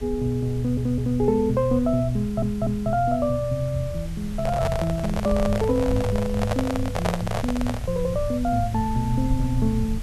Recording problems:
background hiss; slope -2 dB per octave, SNR 20 dB
rumble; below 92 Hz, SNR 9 dB
audio stuttering; at 0.5 s and at 2 s
handling noise; from 4.5 to 8 s; peak +2 dB vs average level

